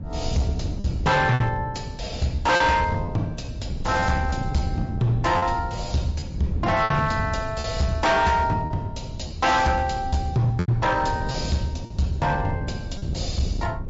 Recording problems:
treble cut off; nothing above 7.6 kHz
codec artefacts; MP3, log-spectral distance 2 dB
distortion; hard clipping, signal-to-distortion ratio 10 dB
wind on the microphone; below 160 Hz, SNR 8 dB
lost packets; 5% of the sound replaced, filled with repeated pitch periods

